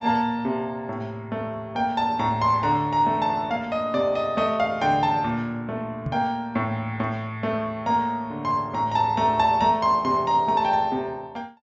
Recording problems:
treble cut off; nothing above 8 kHz
knock on the microphone; at 6 s; peak -1 dB vs average level

